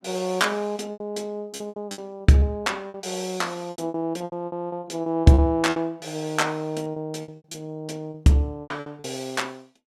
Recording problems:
packet loss; 15% of the sound replaced, filled with repeated pitch periods

